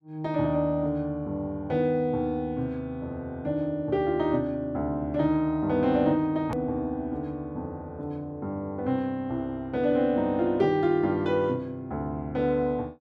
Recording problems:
edit click; at 6.5 s

